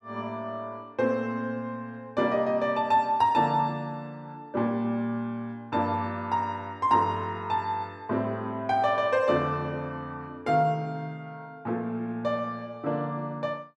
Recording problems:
none

